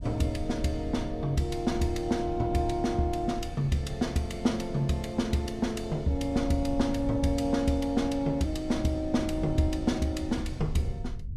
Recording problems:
low-frequency rumble; below 94 Hz, SNR 11 dB

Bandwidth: 15 kHz